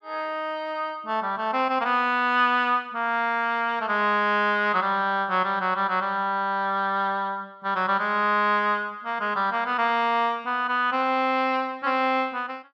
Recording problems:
none

